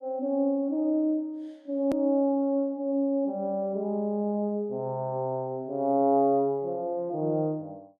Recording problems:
edit click; at 2 s

